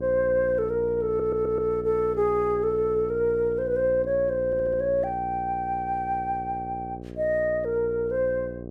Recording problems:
hum; 60 Hz, harmonics up to 780 Hz, SNR 12 dB
stutter; at 1 s and at 4.5 s

